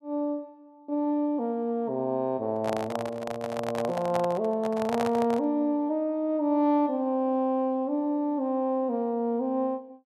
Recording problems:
microphone handling noise; from 2.5 to 5.5 s; peak +1 dB vs average level

